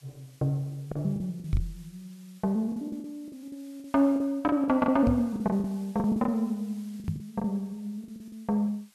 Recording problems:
background hiss; slope +2 dB per octave, SNR 29 dB
packet loss; 12% of the sound replaced, filled with the last packet
microphone bump; at 1.5 s, at 5 s and at 7 s; peak +4 dB vs average level

